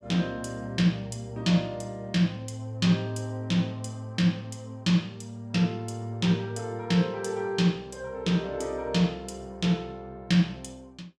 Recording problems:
none

